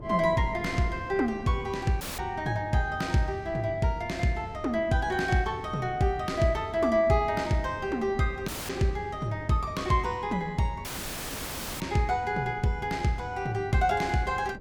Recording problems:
wind noise; below 320 Hz, SNR 18 dB
audio cutting out; at 2 s, at 8.5 s and at 11 s for 1 s; filled with static

